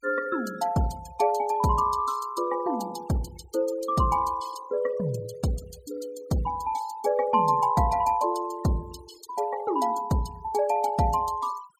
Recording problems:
denoising artefacts; signal-to-artefact ratio 19 dB

